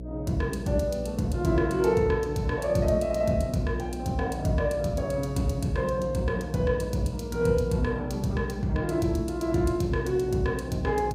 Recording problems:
electrical hum; 60 Hz, harmonics up to 660 Hz, SNR 11 dB

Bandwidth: 15.5 kHz